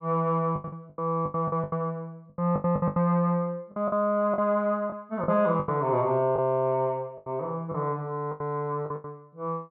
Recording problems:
packet loss; 14% of the sound replaced, filled with the last packet

